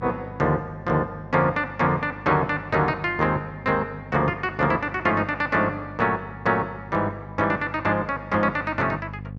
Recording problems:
hum; 50 Hz, harmonics up to 550 Hz, SNR 17 dB

